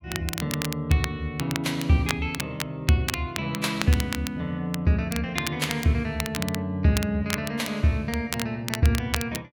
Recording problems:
crackle; vinyl, SNR 8 dB

